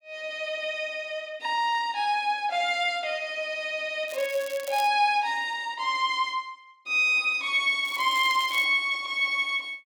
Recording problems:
crackling; at 4 s and at 8 s; loose cable, SNR 17 dB

